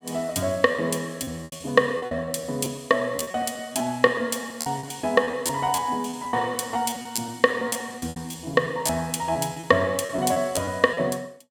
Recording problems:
lost packets; 13% of the sound replaced, filled with repeated pitch periods

